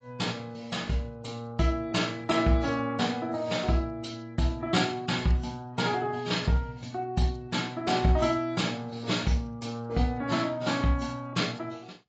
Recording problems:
codec artefacts; AAC, log-spectral distance 3 dB, nothing above 7.6 kHz

